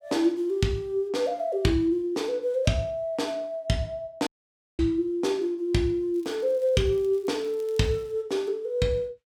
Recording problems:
audio cutting out; at 4.5 s for 0.5 s
crackle; from 6 to 8 s; loose cable, SNR 30 dB

